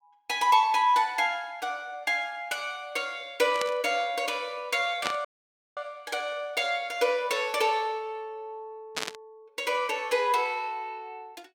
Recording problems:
burst of static; at 3.5 s, at 5 s and at 9 s; peak +1 dB vs average level
dropout; at 5.5 s for 0.5 s

